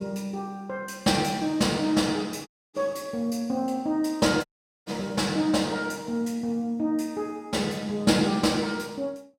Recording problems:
audio cutting out; at 2.5 s and at 4.5 s

